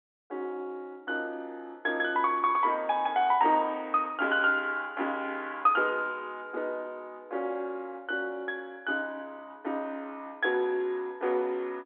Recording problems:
phone line; 260 Hz to 3.8 kHz, G.711

